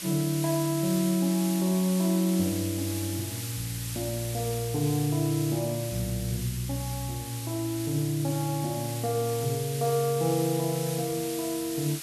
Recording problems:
hiss; SNR 8 dB

